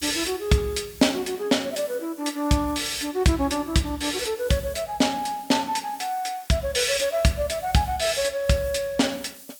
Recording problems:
hiss; SNR 20 dB

